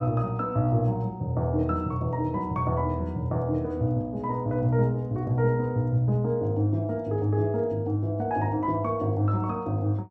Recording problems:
none

